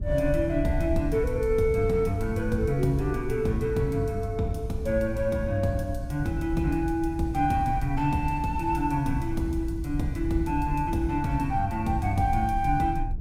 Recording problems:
rumble; below 82 Hz, SNR 9 dB

